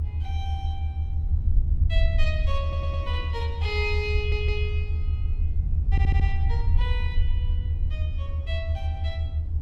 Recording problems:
low-frequency rumble; below 80 Hz, SNR -8 dB
wind noise; below 310 Hz, SNR 16 dB
audio stuttering; at 2.5 s, at 4 s and at 6 s

